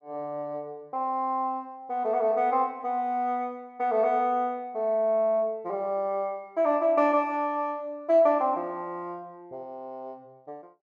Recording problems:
none

